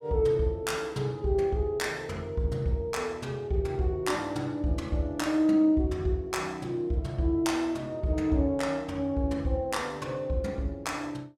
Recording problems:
none

